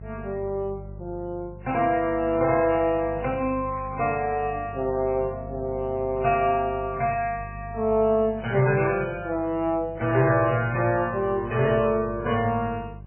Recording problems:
lossy compression; MP3, then AAC, log-spectral distance 3 dB, nothing above 2.6 kHz
electrical hum; 50 Hz, harmonics up to 550 Hz, SNR 16 dB
crackle; from 3.5 to 4.5 s; loose cable, SNR 25 dB

